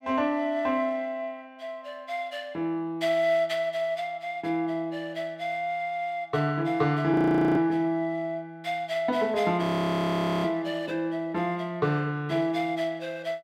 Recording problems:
audio freezing; at 7 s and at 9.5 s for 1 s

